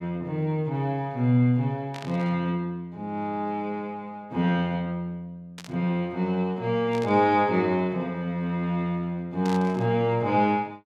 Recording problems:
static burst; 4 times, first at 2 s; peak -10 dB vs average level

